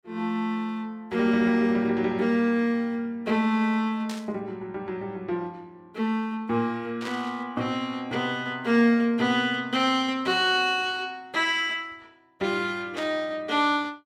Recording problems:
burst of static; at 4 s, at 7 s and at 13 s; peak -7 dB vs average level

